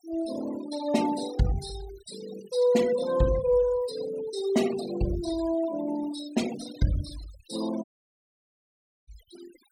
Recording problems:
denoising artefacts; signal-to-artefact ratio 14 dB
audio cutting out; at 8 s for 1 s

